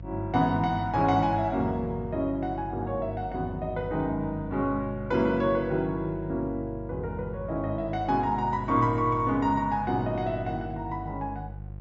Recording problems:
treble cut off; nothing above 7.3 kHz
electrical hum; 50 Hz, harmonics up to 500 Hz, SNR 12 dB

